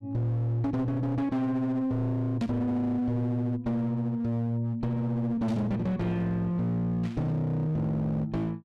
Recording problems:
distorted audio; hard clipping, uneven, signal-to-distortion ratio 10 dB
burst of static; at 2.5 s, at 5.5 s and at 7 s; peak -12 dB vs average level

